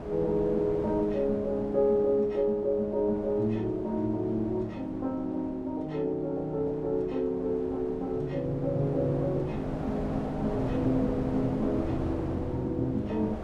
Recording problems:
wind noise; below 650 Hz, SNR 11 dB

